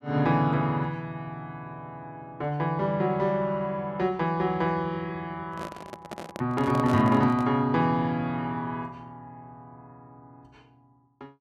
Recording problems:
handling noise; from 5.5 to 7.5 s; peak -4 dB vs average level

